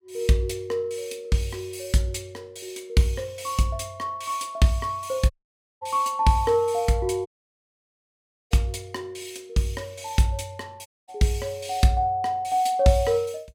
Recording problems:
audio cutting out; at 5.5 s for 0.5 s, at 7.5 s for 1 s and at 11 s

